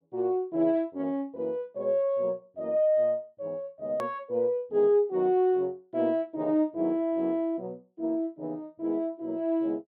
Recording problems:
click at an edit; at 4 s

